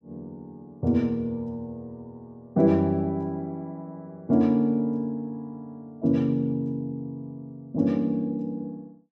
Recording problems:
none

